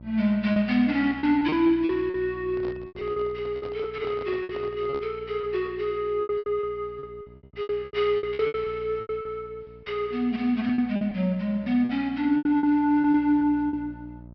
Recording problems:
treble missing; nothing above 5.5 kHz
hum; 60 Hz, harmonics up to 660 Hz, SNR 22 dB
packet loss; 13% of the sound replaced, filled with repeated pitch periods
microphone handling noise; from 2.5 to 5 s; peak -11 dB vs average level

